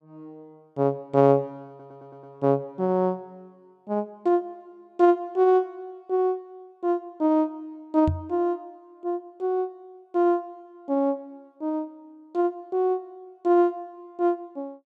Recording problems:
stutter; at 1.5 s
microphone bump; at 8 s; peak +2 dB vs average level

